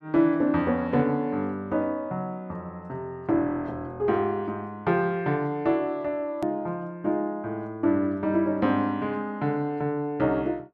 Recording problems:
hard cut with a click; at 6.5 s

